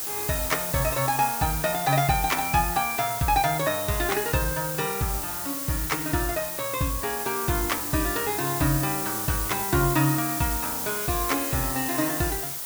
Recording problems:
background hiss; slope -1 dB per octave, SNR 2 dB

